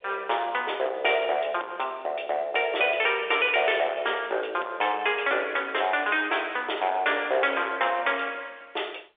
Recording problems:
telephone audio; 320 Hz to 3.7 kHz, G.711
distortion; soft clipping, signal-to-distortion ratio 8 dB

